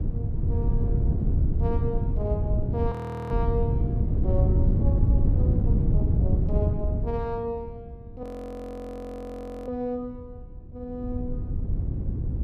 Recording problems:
wind on the microphone; below 130 Hz, SNR -9 dB
frozen audio; at 3 s and at 8 s for 1.5 s

